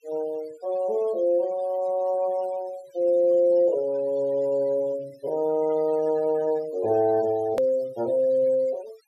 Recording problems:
denoising artefacts; signal-to-artefact ratio 24 dB
click at an edit; at 7.5 s

